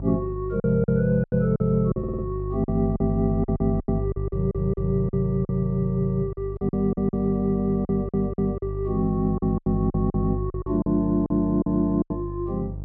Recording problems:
electrical hum; 50 Hz, harmonics up to 500 Hz, SNR 7 dB
packet loss; 12% of the sound replaced, filled with silence
audio stuttering; at 2 s, at 4.5 s and at 8 s

